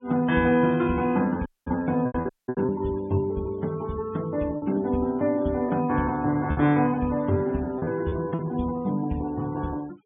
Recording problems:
treble cut off; nothing above 3.6 kHz
noise reduction artefacts; signal-to-artefact ratio 24 dB
packet loss; 6% of the sound replaced, filled with repeated pitch periods
dropout; at 1.5 s and at 2.5 s

